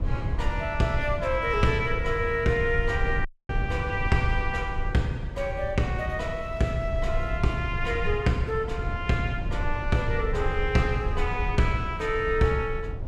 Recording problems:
rumble; below 92 Hz, SNR 5 dB
audio cutting out; at 3.5 s

